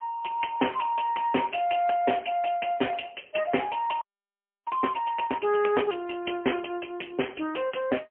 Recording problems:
telephone audio; 260 Hz to 3.1 kHz, AMR-NB, then MP3
audio freezing; at 4 s for 0.5 s

